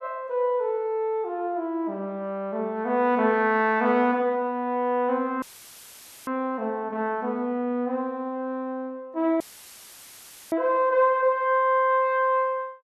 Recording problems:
dropout; at 5.5 s for 1 s and at 9.5 s for 1 s; filled with static

